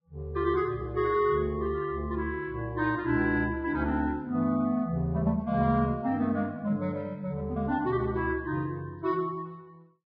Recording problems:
codec artefacts; Vorbis, log-spectral distance 2 dB

